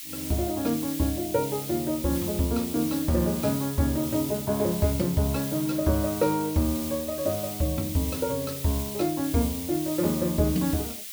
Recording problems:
background hiss; SNR 8 dB

